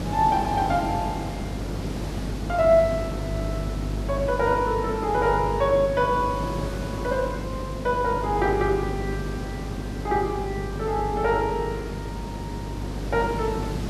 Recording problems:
mains hum; 50 Hz, harmonics up to 350 Hz, SNR 9 dB
hiss; slope -6 dB per octave, SNR 9 dB

